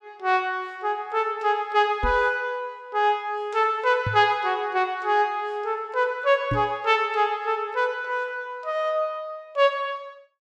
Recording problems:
knock on the microphone; at 2 s, at 4 s and at 6.5 s; peak 0 dB vs average level

